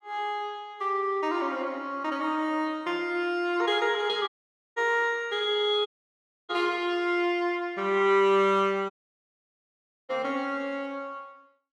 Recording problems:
dropout; at 4.5 s, at 6 s for 0.5 s and at 9 s for 1 s

